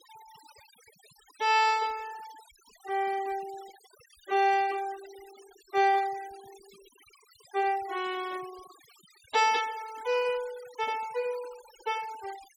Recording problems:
denoising artefacts; signal-to-artefact ratio 20 dB

